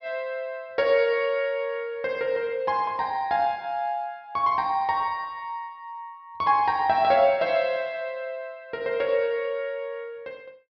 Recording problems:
low-pass filter; nothing above 5.5 kHz

